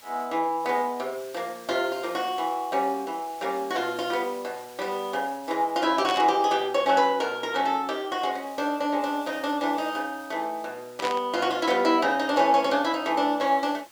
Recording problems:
hiss; slope 0 dB per octave, SNR 23 dB
burst of static; at 6 s and at 11 s; peak -2 dB vs average level

